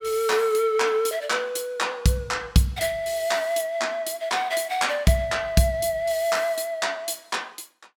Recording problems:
none

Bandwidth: 17 kHz